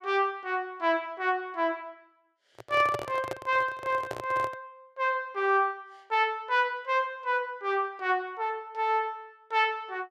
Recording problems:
microphone handling noise; from 2.5 to 4.5 s; peak -2 dB vs average level

